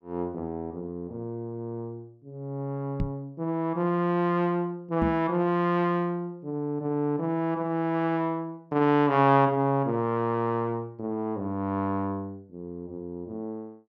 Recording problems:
knock on the microphone; at 3 s and at 5 s; peak +2 dB vs average level

